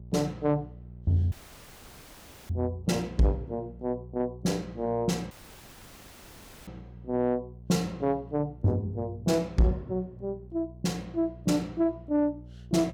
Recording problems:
distortion; soft clipping, signal-to-distortion ratio 11 dB
hum; 60 Hz, harmonics up to 420 Hz, SNR 18 dB
audio cutting out; at 1.5 s for 1 s and at 5.5 s for 1.5 s

